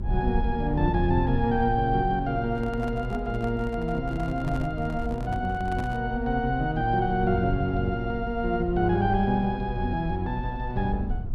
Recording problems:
rumble; below 70 Hz, SNR 8 dB
microphone handling noise; from 2.5 to 6 s; peak -9 dB vs average level

